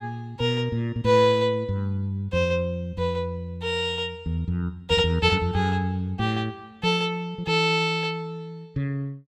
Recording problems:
none

